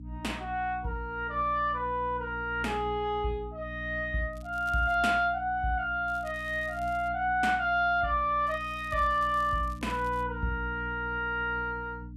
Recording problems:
hum; 60 Hz, harmonics up to 300 Hz, SNR 14 dB
crackling; at 4.5 s, from 6 to 7 s and from 8.5 to 10 s; loose cable, SNR 27 dB

